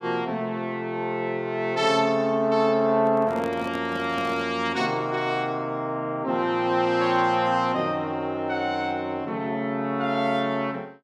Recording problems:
microphone handling noise; from 3 to 4.5 s; peak -7 dB vs average level

